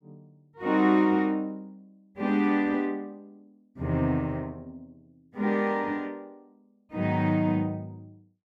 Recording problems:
none

